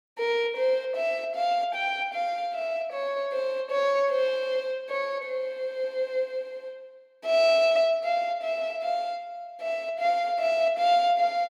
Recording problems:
none

